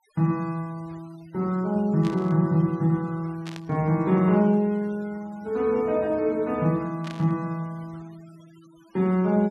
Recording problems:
denoising artefacts; signal-to-artefact ratio 27 dB
static burst; at 2 s, at 3.5 s and at 7 s; peak -11 dB vs average level

